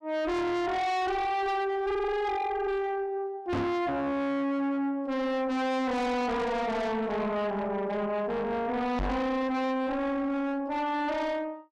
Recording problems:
distorted audio; soft clipping, signal-to-distortion ratio 6 dB
microphone bump; at 3.5 s and at 9 s; peak +5 dB vs average level

